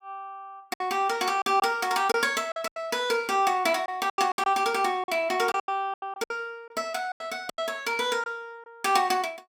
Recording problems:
lost packets; 10% of the sound replaced, filled with silence

